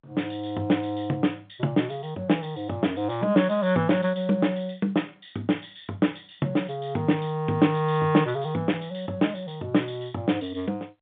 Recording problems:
telephone audio; 130 Hz to 3.6 kHz, G.711

